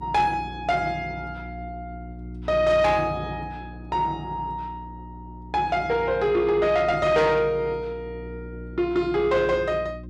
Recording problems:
distortion; soft clipping, signal-to-distortion ratio 11 dB
hum; 60 Hz, harmonics up to 360 Hz, SNR 16 dB

